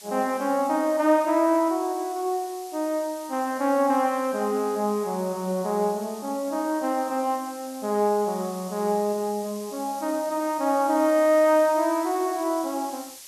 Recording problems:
background hiss; SNR 18 dB

